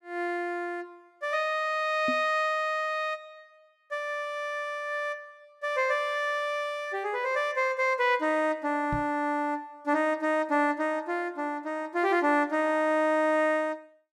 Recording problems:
knock on the microphone; at 2 s and at 9 s; peak -2 dB vs average level

